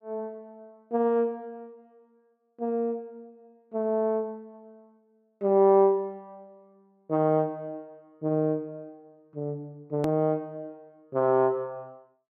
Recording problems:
hard cut with a click; at 10 s

